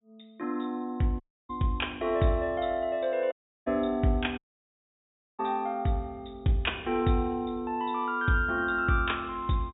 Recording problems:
treble missing; nothing above 4 kHz
dropout; at 1 s, at 3.5 s and at 4.5 s for 1 s

